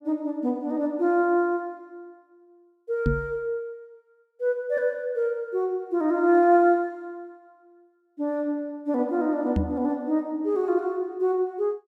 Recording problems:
knock on the microphone; at 3 s and at 9.5 s; peak +4 dB vs average level

